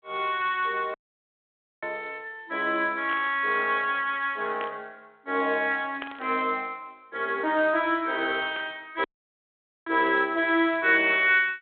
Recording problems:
telephone audio; 240 Hz to 3.6 kHz, G.726
dropout; at 1 s for 1 s and at 9 s for 1 s
static burst; 4 times, first at 3 s; peak -7 dB vs average level

